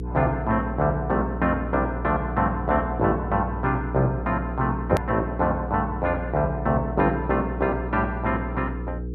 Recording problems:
mains hum; 60 Hz, harmonics up to 480 Hz, SNR 7 dB
edit click; at 5 s

